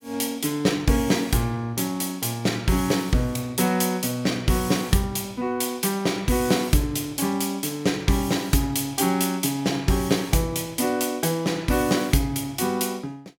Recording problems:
none

